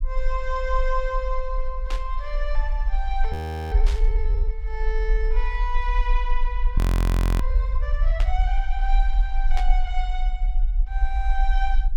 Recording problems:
low-frequency rumble; below 44 Hz, SNR -6 dB
burst of static; 4 times, first at 2 s; peak 0 dB vs average level
audio freezing; at 3.5 s and at 7 s for 0.5 s

